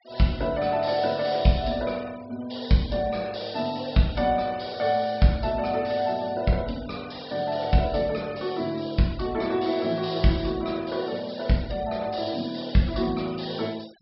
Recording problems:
low-pass filter; nothing above 5.4 kHz
noise reduction artefacts; signal-to-artefact ratio 22 dB

